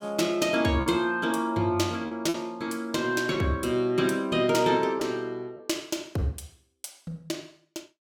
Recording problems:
packet loss; 3% of the sound replaced, filled with repeated pitch periods

